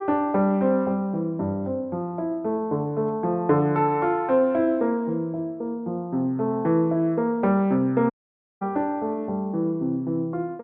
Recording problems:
audio cutting out; at 8 s for 0.5 s

